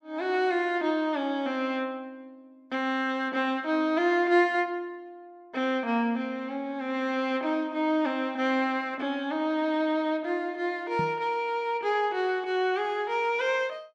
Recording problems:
microphone thump; at 11 s; peak -2 dB vs average level

